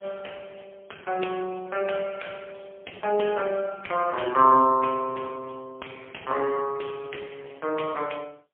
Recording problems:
phone line; 280 Hz to 3 kHz, AMR-NB, then MP3

